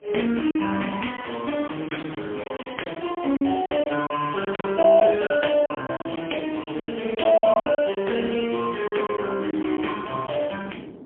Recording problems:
telephone audio; 240 Hz to 3.3 kHz, AMR-NB, then MP3
wind on the microphone; below 440 Hz, SNR 18 dB
packet loss; 10% of the sound replaced, filled with silence

